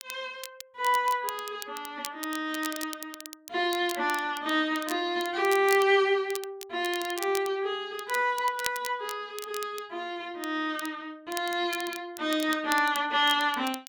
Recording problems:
crackle; vinyl, SNR 13 dB

